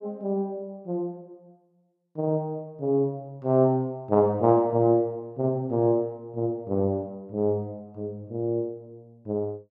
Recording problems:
none

